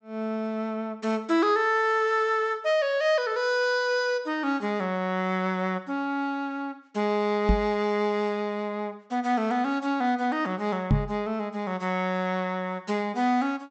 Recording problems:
treble missing; nothing above 8 kHz
knock on the microphone; at 7.5 s and at 11 s; peak +7 dB vs average level

